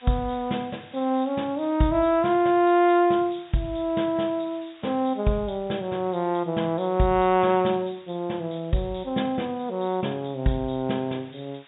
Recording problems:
treble cut off; nothing above 4 kHz
hiss; SNR 27 dB

